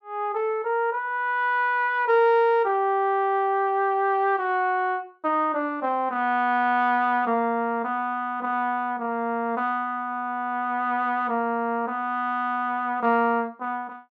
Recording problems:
none

